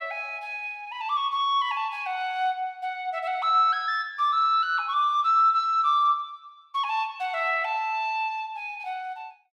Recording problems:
none

